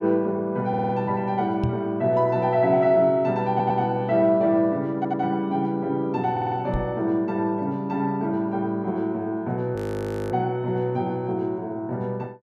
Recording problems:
stutter; 4 times, first at 0.5 s
microphone thump; at 1.5 s and at 6.5 s; peak +1 dB vs average level
frozen audio; at 10 s for 0.5 s

